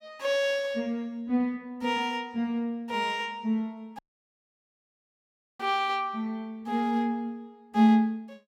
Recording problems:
dropout; at 4 s for 1.5 s

